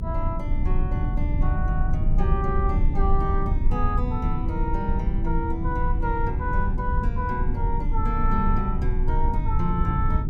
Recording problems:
low-frequency rumble; below 78 Hz, strongest tone 24 Hz, SNR -3 dB

